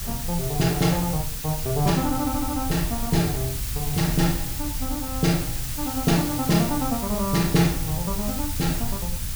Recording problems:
hiss; slope +2 dB per octave, SNR 6 dB
rumble; below 86 Hz, SNR 9 dB

